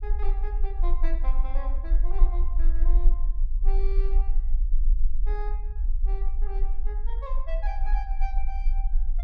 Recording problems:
low-frequency rumble; below 36 Hz, strongest tone 18 Hz, SNR -13 dB

